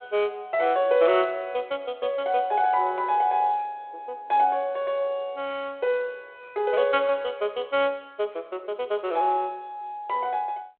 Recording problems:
phone line; 320 Hz to 3.7 kHz, G.726

